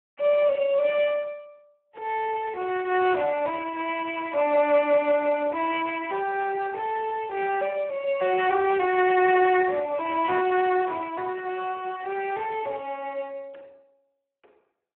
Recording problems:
telephone audio; 320 Hz to 3.3 kHz, Speex

